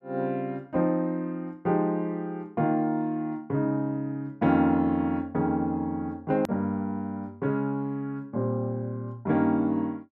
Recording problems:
edit click; at 6.5 s

